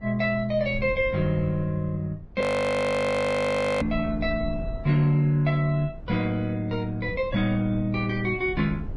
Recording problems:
codec artefacts; Vorbis, log-spectral distance 2 dB, nothing above 11 kHz
low-frequency rumble; below 110 Hz, SNR 15 dB
audio freezing; at 2.5 s for 1.5 s

